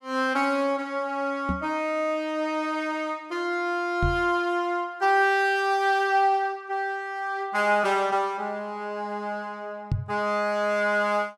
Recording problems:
microphone thump; at 1.5 s, at 4 s and at 10 s; peak +3 dB vs average level

